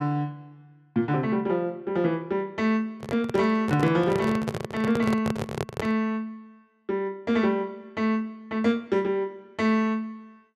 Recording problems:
microphone handling noise; from 3 to 6 s; peak +1 dB vs average level

